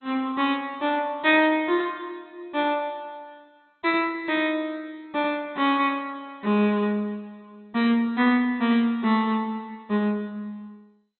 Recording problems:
lossy compression; MP2, log-spectral distance 2 dB, nothing above 3.8 kHz

